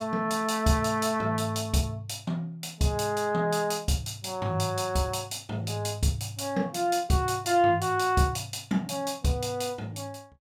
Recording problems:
none

